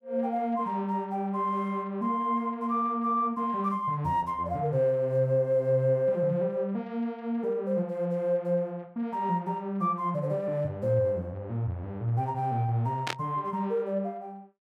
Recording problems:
static burst; at 13 s; peak +2 dB vs average level

